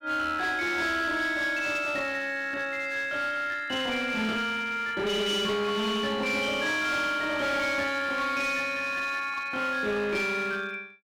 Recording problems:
distortion; hard clipping, uneven, signal-to-distortion ratio 10 dB

